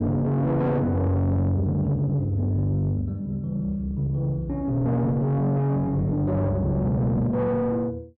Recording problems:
distorted audio; soft clipping, signal-to-distortion ratio 7 dB

